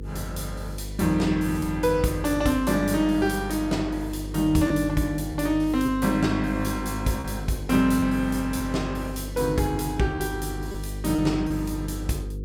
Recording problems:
hum; 50 Hz, harmonics up to 500 Hz, SNR 10 dB
lost packets; 2% of the sound replaced, filled with repeated pitch periods

